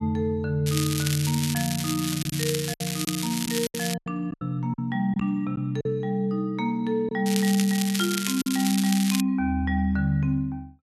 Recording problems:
lost packets; 5% of the sound replaced, filled with silence
crackle; from 0.5 to 4 s and from 7.5 to 9 s; loose cable, SNR 5 dB

